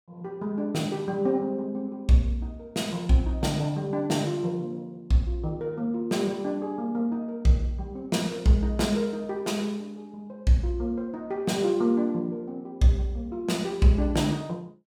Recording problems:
none

